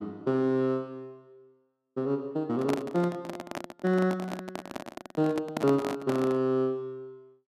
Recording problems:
handling noise; from 2.5 to 6.5 s; peak 0 dB vs average level

